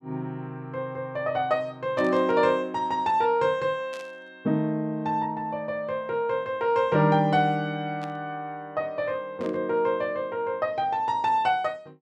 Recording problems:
static burst; 4 times, first at 2 s; peak -13 dB vs average level

